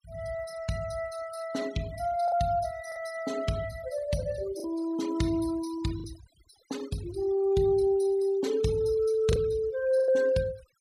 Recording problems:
denoising artefacts; signal-to-artefact ratio 18 dB
lost packets; 3% of the sound replaced, filled with the last packet

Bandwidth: 15.5 kHz